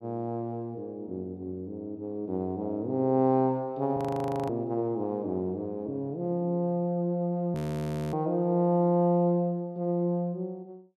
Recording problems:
audio freezing; at 4 s for 0.5 s and at 7.5 s for 0.5 s

